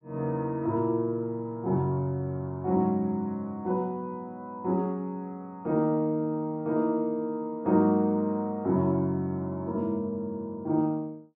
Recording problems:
none

